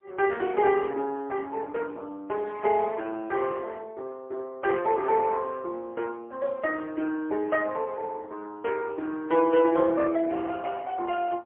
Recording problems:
phone line; 280 Hz to 3.5 kHz, AMR-NB, then MP3

